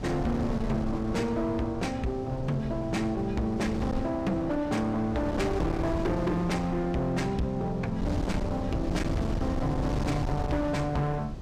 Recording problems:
distortion; hard clipping, uneven, signal-to-distortion ratio 8 dB
wind noise; below 250 Hz, SNR 6 dB

